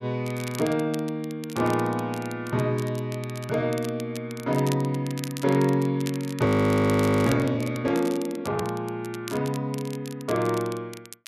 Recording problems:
crackling; vinyl, SNR 16 dB
frozen audio; at 6.5 s for 1 s

